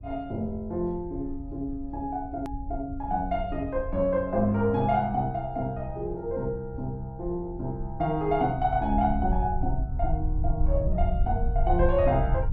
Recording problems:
rumble; below 72 Hz, SNR 5 dB
hard cut with a click; at 2.5 s

